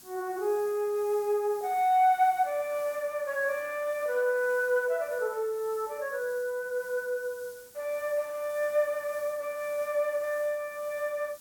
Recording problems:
hiss; SNR 20 dB

